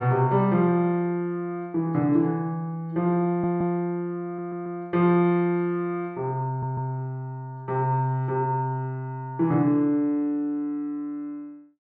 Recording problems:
stutter; at 3.5 s, at 4.5 s and at 6.5 s

